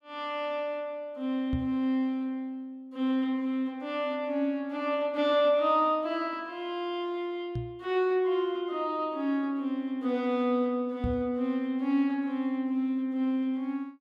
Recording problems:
microphone bump; at 1.5 s, at 7.5 s and at 11 s; peak 0 dB vs average level

